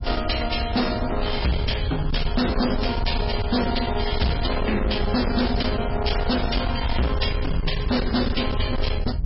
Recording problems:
lossy codec; MP3, log-spectral distance 5 dB, nothing above 5.3 kHz
distortion; hard clipping, uneven, signal-to-distortion ratio 6 dB
rumble; below 94 Hz, SNR 4 dB

